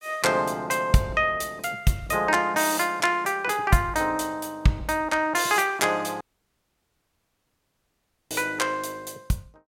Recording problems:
dropout; at 6 s for 2 s

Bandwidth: 16.5 kHz